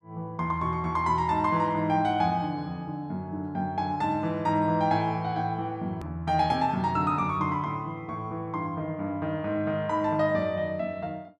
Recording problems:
edit click; at 6 s

